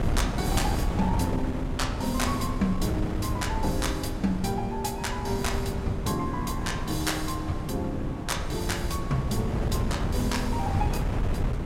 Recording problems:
wind noise; below 220 Hz, SNR 1 dB

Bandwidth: 16 kHz